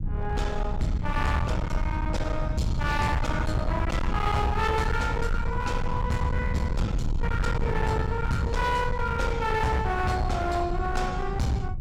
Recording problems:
distorted audio; hard clipping, signal-to-distortion ratio 8 dB
low-frequency rumble; below 130 Hz, SNR 2 dB

